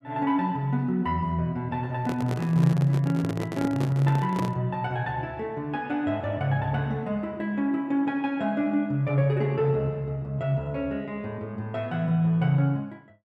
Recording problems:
handling noise; from 2 to 4.5 s; peak -1 dB vs average level

